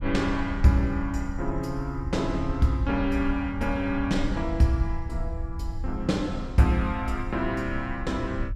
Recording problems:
low-frequency rumble; below 76 Hz, SNR 9 dB

